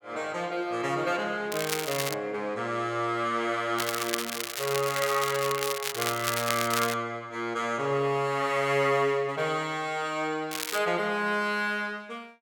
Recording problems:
crackling; at 1.5 s, from 4 to 7 s and at 11 s; loose cable, SNR 4 dB

